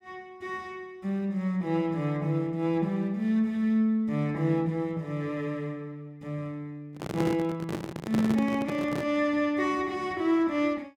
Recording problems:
microphone handling noise; from 7 to 9 s; peak +2 dB vs average level

